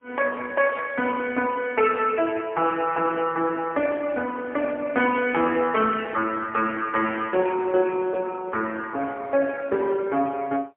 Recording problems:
phone line; 260 Hz to 3.3 kHz, AMR-NB, then MP3

